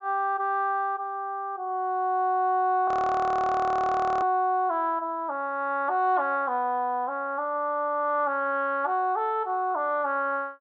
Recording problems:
low-pass filter; nothing above 8 kHz
audio freezing; at 3 s for 1.5 s

